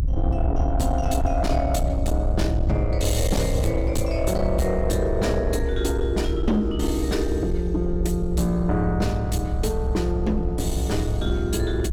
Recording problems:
distorted audio; soft clipping, signal-to-distortion ratio 11 dB
rumble; below 68 Hz, SNR 2 dB

